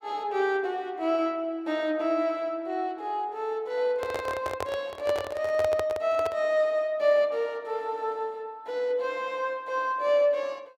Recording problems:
microphone handling noise; from 4 to 6.5 s; peak 0 dB vs average level

